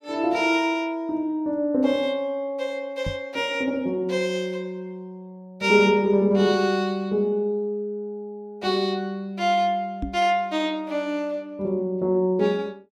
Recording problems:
knock on the microphone; at 3 s and at 10 s; peak -2 dB vs average level

